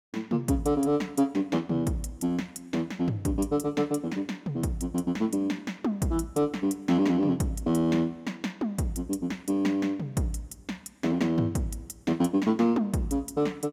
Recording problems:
none

